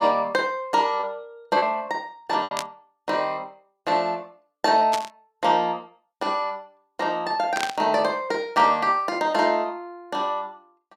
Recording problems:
lost packets; 2% of the sound replaced, filled with repeated pitch periods
static burst; at 2.5 s, at 5 s and at 7.5 s; peak 0 dB vs average level

